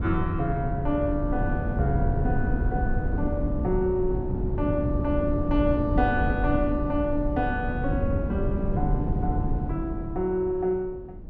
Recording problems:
wind noise; below 170 Hz, SNR 1 dB

